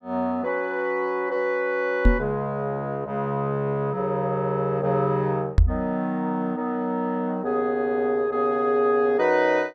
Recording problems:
knock on the microphone; at 2 s and at 5.5 s; peak +9 dB vs average level

